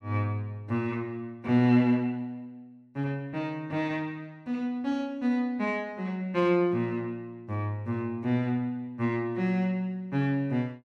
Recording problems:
none

